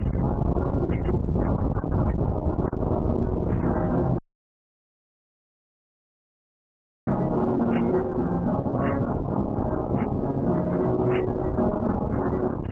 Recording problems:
codec artefacts; MP3, then Opus, log-spectral distance 5 dB
distorted audio; hard clipping, signal-to-distortion ratio 8 dB
background hiss; SNR 24 dB
wind on the microphone; below 350 Hz, SNR 3 dB
dropout; at 4 s for 3 s

